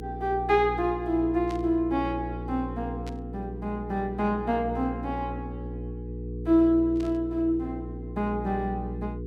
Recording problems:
hum; 60 Hz, harmonics up to 480 Hz, SNR 9 dB
static burst; at 1.5 s, at 3 s and at 7 s; peak -13 dB vs average level

